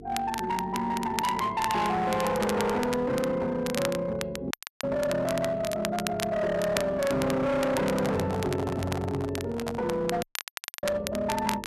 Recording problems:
distorted audio; hard clipping, uneven, signal-to-distortion ratio 8 dB
hum; 50 Hz, harmonics up to 450 Hz, SNR 20 dB
crackle; vinyl, SNR 10 dB
dropout; at 4.5 s and at 10 s for 0.5 s
handling noise; from 8 to 10 s; peak -2 dB vs average level

